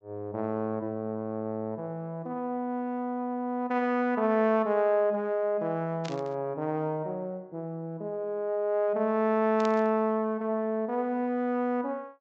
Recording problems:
low-pass filter; nothing above 8 kHz
burst of static; at 6 s and at 9.5 s; peak -8 dB vs average level

